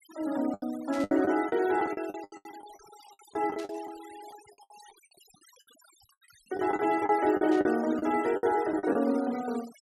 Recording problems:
denoising artefacts; signal-to-artefact ratio 20 dB
lost packets; 14% of the sound replaced, filled with the last packet
static burst; at 1 s, at 3.5 s and at 7.5 s; peak -13 dB vs average level

